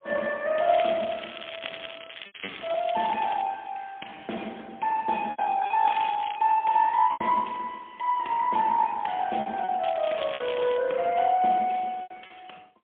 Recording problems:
phone line; 220 Hz to 3.4 kHz, AMR-NB, then MP3
lost packets; 5% of the sound replaced, filled with repeated pitch periods
crackle; from 0.5 to 3.5 s, at 6 s and at 10 s; loose cable, SNR 14 dB

